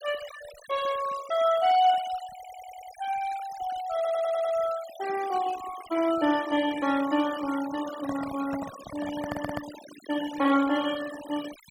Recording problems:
denoising artefacts; signal-to-artefact ratio 14 dB
audio stuttering; at 2.5 s, at 4 s and at 9 s
handling noise; from 8 to 10 s; peak -3 dB vs average level

